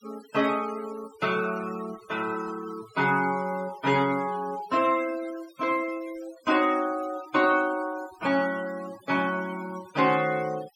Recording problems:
noise reduction artefacts; signal-to-artefact ratio 18 dB

